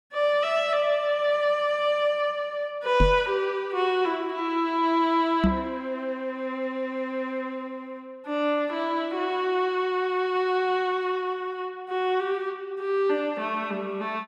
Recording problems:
microphone bump; at 3 s and at 5.5 s; peak +7 dB vs average level

